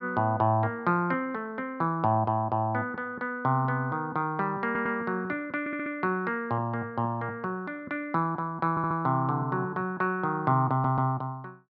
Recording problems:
audio stuttering; 4 times, first at 4.5 s

